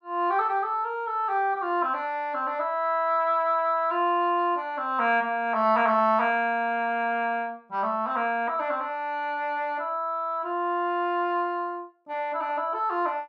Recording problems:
none

